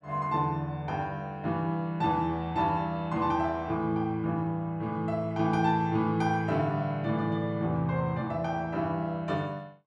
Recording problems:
none

